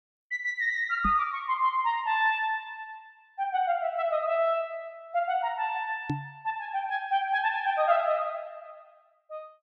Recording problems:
knock on the microphone; at 1 s and at 6 s; peak +1 dB vs average level

